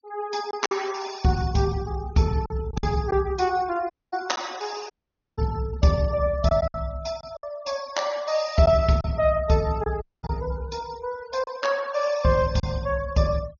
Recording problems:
treble missing; nothing above 6.5 kHz
noise reduction artefacts; signal-to-artefact ratio 20 dB
lost packets; 4% of the sound replaced, filled with silence
audio cutting out; at 4 s, at 5 s and at 10 s

